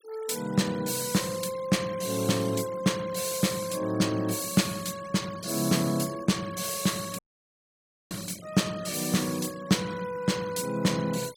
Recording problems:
noise reduction artefacts; signal-to-artefact ratio 17 dB
dropout; at 7 s for 1 s

